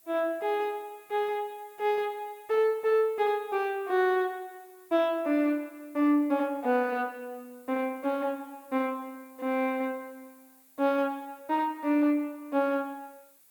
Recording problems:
hiss; slope -1 dB per octave, SNR 27 dB

